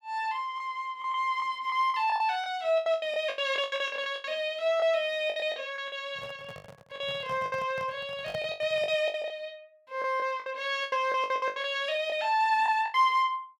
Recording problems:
packet loss; 15% of the sound replaced, filled with the last packet
handling noise; from 6 to 9 s; peak -8 dB vs average level

